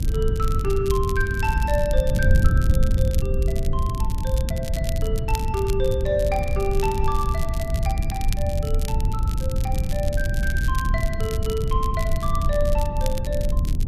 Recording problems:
hum; 60 Hz, harmonics up to 300 Hz, SNR 14 dB
wind on the microphone; below 90 Hz, SNR -3 dB
crackle; vinyl, SNR 12 dB

